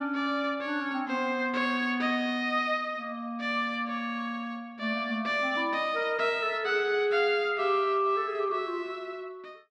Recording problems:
none

